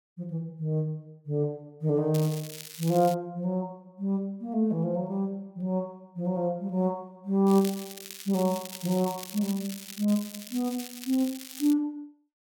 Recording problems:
crackling; from 2 to 3 s and from 7.5 to 12 s; loose cable, SNR 12 dB

